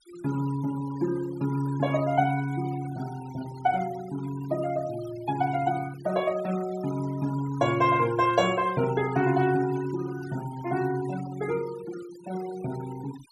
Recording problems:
noise reduction artefacts; signal-to-artefact ratio 17 dB

